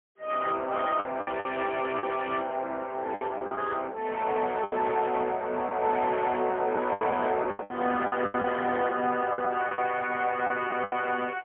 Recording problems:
telephone audio; 320 Hz to 3.3 kHz, AMR-NB, then MP3
lost packets; 10% of the sound replaced, filled with the last packet

